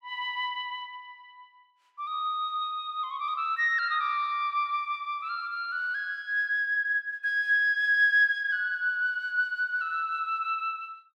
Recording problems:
none

